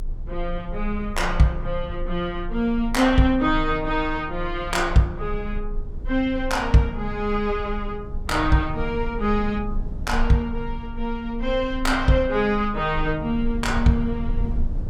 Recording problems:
low-frequency rumble; below 50 Hz, strongest tone 26 Hz, SNR 10 dB

